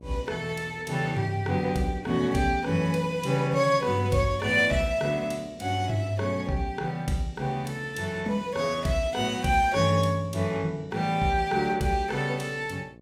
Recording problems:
hum; 60 Hz, harmonics up to 780 Hz, SNR 24 dB

